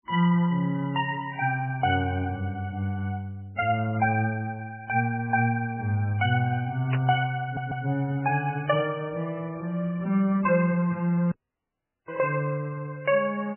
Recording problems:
codec artefacts; MP3, log-spectral distance 3 dB, nothing above 2.6 kHz
burst of static; at 7 s; peak -2 dB vs average level
stutter; at 7.5 s
dropout; at 11 s for 1 s

